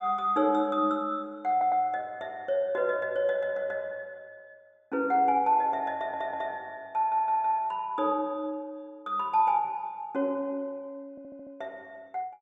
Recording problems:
audio stuttering; 4 times, first at 1.5 s

